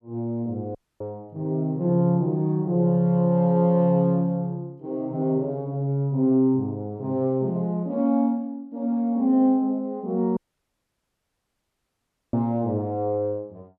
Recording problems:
dropout; at 1 s and at 10 s for 2 s

